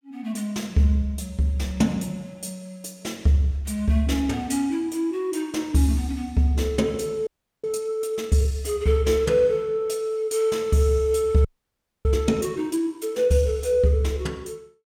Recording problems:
audio freezing; at 7.5 s and at 11 s for 0.5 s

